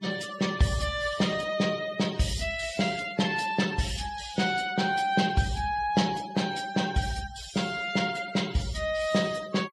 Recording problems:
noise reduction artefacts; signal-to-artefact ratio 16 dB

